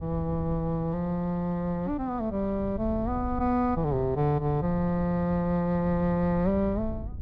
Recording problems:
wind on the microphone; below 110 Hz, SNR 12 dB

